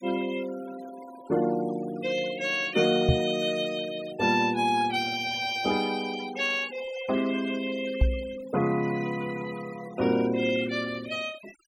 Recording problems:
denoising artefacts; signal-to-artefact ratio 16 dB
microphone bump; at 3 s and at 8 s; peak +8 dB vs average level

